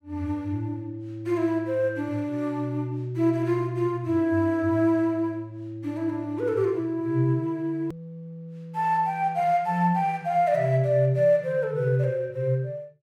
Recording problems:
edit click; at 8 s

